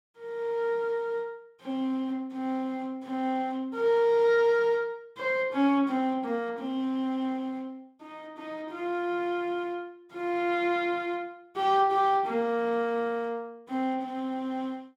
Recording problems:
none

